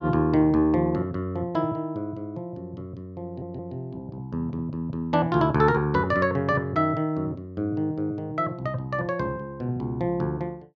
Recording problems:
audio stuttering; at 3.5 s

